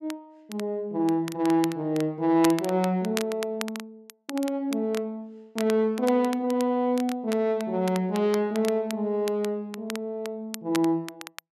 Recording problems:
crackling; vinyl, SNR 14 dB

